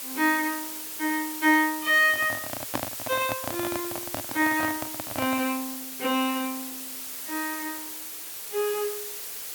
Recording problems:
background hiss; slope 0 dB per octave, SNR 7 dB
handling noise; from 2 to 5.5 s; peak +1 dB vs average level

